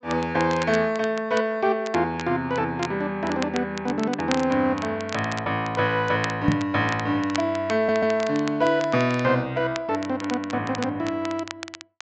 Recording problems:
low-pass filter; nothing above 8 kHz
crackling; vinyl, SNR 14 dB
microphone bump; at 6.5 s; peak +6 dB vs average level
stutter; at 8 s

